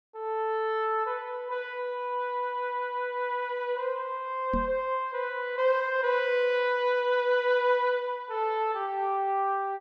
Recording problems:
microphone thump; at 4.5 s; peak -1 dB vs average level

